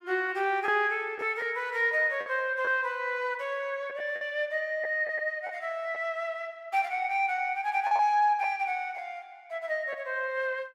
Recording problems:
lost packets; 3% of the sound replaced, filled with the last packet

